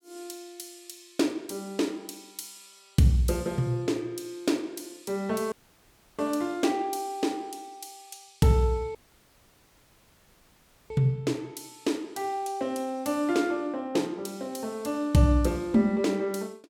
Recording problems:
dropout; at 5.5 s for 0.5 s and at 9 s for 2 s

